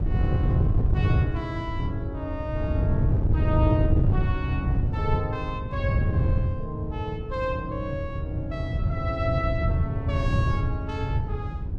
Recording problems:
wind on the microphone; below 130 Hz, SNR -6 dB

